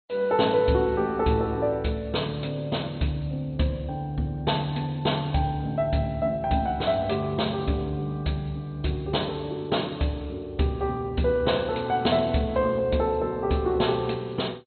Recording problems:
codec artefacts; MP2, log-spectral distance 6 dB, nothing above 4.2 kHz

